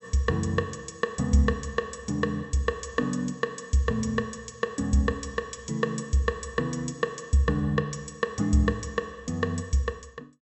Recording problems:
treble missing; nothing above 7.9 kHz

